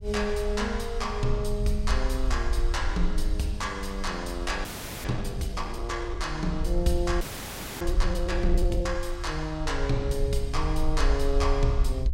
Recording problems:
rumble; below 52 Hz, SNR 2 dB
audio freezing; at 4.5 s and at 7 s for 0.5 s

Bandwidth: 16 kHz